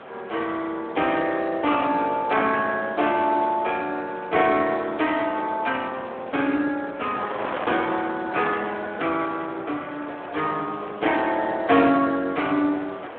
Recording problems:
phone line; 220 Hz to 3.6 kHz, Speex
wind noise; below 1.4 kHz, SNR 13 dB

